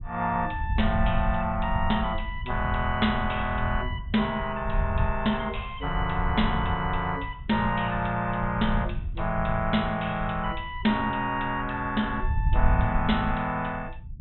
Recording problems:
treble missing; nothing above 3.7 kHz
low-frequency rumble; below 86 Hz, SNR 6 dB

